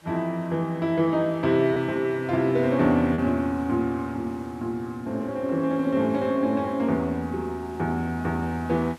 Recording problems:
hiss; slope -3 dB per octave, SNR 28 dB
lost packets; 0.7% of the sound replaced, filled with repeated pitch periods

